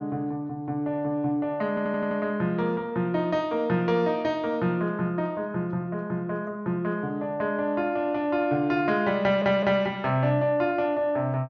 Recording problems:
treble cut off; nothing above 6.5 kHz
audio stuttering; at 1.5 s and at 9 s

